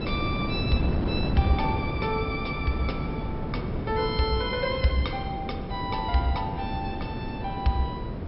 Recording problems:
low-pass filter; nothing above 5.4 kHz
wind noise; below 340 Hz, SNR 2 dB

